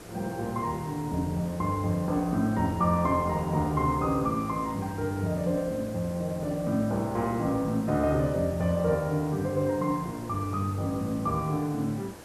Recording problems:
background hiss; SNR 17 dB

